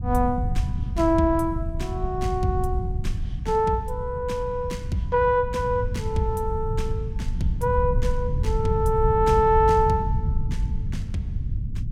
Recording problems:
rumble; below 110 Hz, SNR 4 dB

